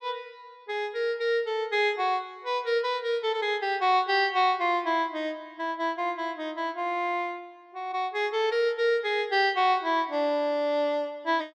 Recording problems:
none

